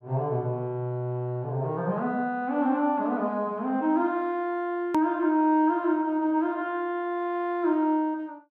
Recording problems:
edit click; at 5 s

